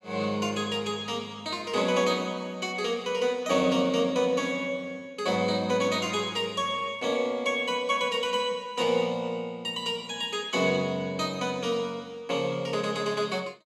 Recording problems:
none

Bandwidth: 14.5 kHz